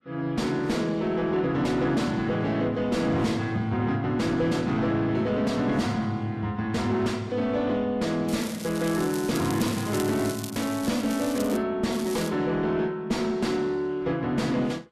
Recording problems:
codec artefacts; Vorbis, log-spectral distance 3 dB, nothing above 13.1 kHz
distorted audio; soft clipping, signal-to-distortion ratio 7 dB
crackling; from 8.5 to 12 s and at 12 s; loose cable, SNR 13 dB

